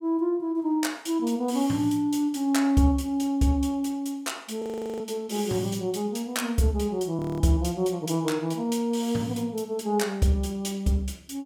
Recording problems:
frozen audio; at 4.5 s and at 7 s

